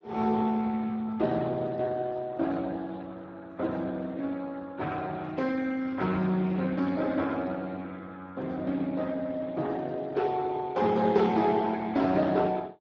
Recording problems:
codec artefacts; Speex, log-spectral distance 3 dB

